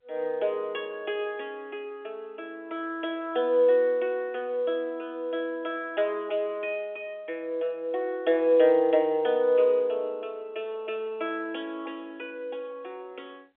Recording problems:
phone line; 340 Hz to 3.6 kHz, G.711

